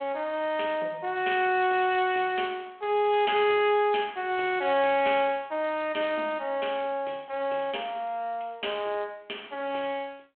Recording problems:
phone line; 300 Hz to 3.3 kHz, G.726

